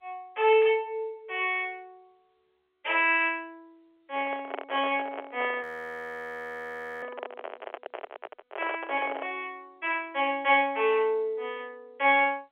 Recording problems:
telephone audio; 340 Hz to 3.3 kHz, G.711
handling noise; from 4 to 9.5 s; peak -3 dB vs average level
frozen audio; at 5.5 s for 1.5 s

